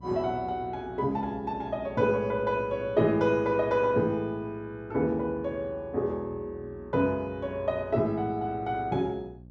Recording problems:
electrical hum; 60 Hz, harmonics up to 600 Hz, SNR 20 dB

